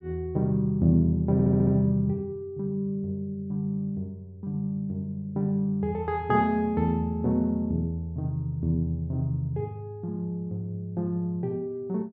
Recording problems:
stutter; at 1.5 s

